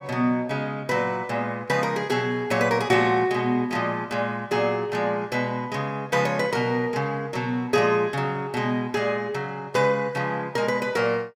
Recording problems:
none

